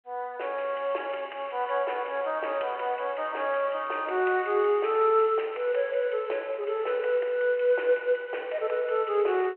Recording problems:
telephone audio; 320 Hz to 3.1 kHz, G.726

